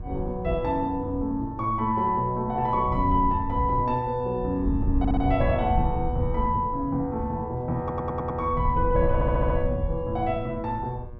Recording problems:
hum; 60 Hz, harmonics up to 1.7 kHz, SNR 25 dB
wind on the microphone; below 94 Hz, SNR 6 dB
audio stuttering; at 5 s, at 8 s and at 9 s

